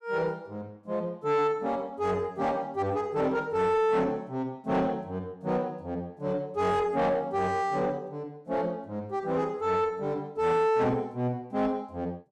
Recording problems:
distorted audio; soft clipping, signal-to-distortion ratio 11 dB

